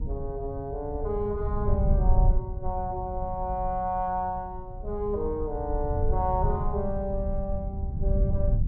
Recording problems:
rumble; below 86 Hz, SNR 0 dB

